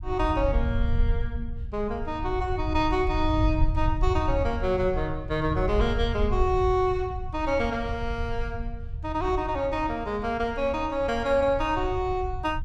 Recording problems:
low-frequency rumble; below 82 Hz, SNR 5 dB

